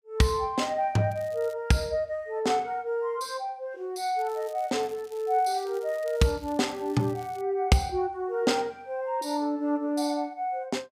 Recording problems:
crackling; at 1 s and from 4 to 7.5 s; loose cable, SNR 25 dB

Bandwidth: 15.5 kHz